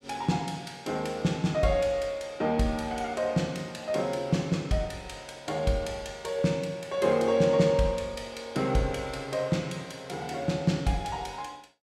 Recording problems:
none

